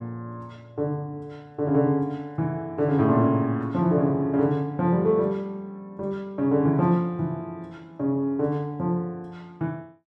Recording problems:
none

